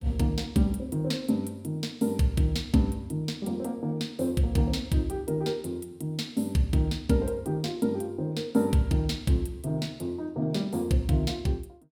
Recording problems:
none

